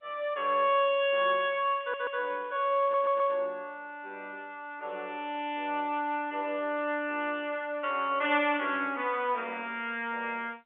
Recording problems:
telephone audio; 260 Hz to 3.5 kHz, G.711
crackling; from 1 to 3.5 s; loose cable, SNR 29 dB
stutter; at 2 s and at 3 s

